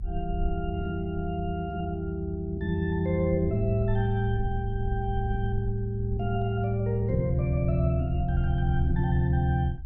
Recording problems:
rumble; below 68 Hz, SNR 9 dB

